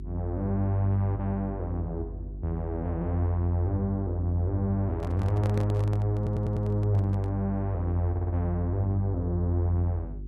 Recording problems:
mains hum; 50 Hz, harmonics up to 400 Hz, SNR 11 dB
handling noise; from 5 to 7.5 s; peak -6 dB vs average level
stutter; at 6 s and at 8 s

